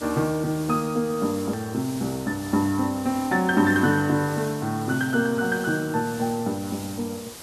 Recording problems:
hiss; slope -2 dB per octave, SNR 15 dB
click at an edit; at 1.5 s

